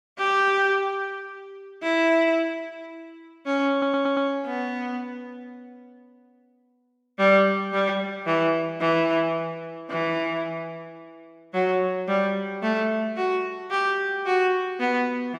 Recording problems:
stutter; at 3.5 s

